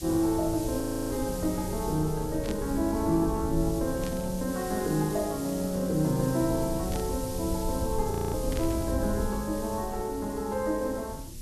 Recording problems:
mains hum; 60 Hz, harmonics up to 1.1 kHz, SNR 25 dB
background hiss; slope +6 dB per octave, SNR 12 dB
rumble; below 98 Hz, SNR 9 dB
audio freezing; at 1 s and at 8 s
static burst; 4 times, first at 2.5 s; peak -7 dB vs average level

